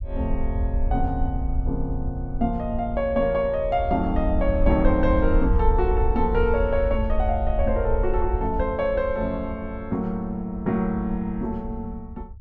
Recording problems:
low-frequency rumble; below 66 Hz, SNR 4 dB

